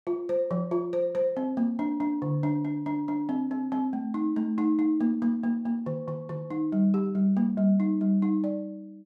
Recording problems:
none

